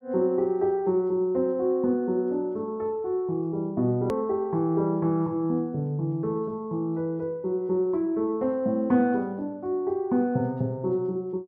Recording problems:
hard cut with a click; at 4 s

